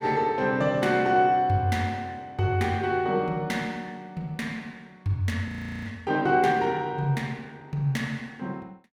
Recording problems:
audio freezing; at 5.5 s

